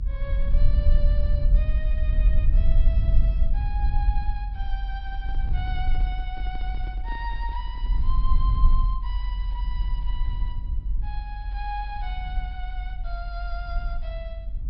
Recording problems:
treble missing; nothing above 5.4 kHz
rumble; below 50 Hz, SNR -12 dB
handling noise; from 5 to 8 s; peak -3 dB vs average level

